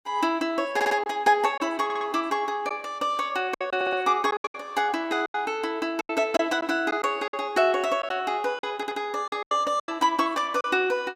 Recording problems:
lost packets; 8% of the sound replaced, filled with silence
stutter; 4 times, first at 1 s

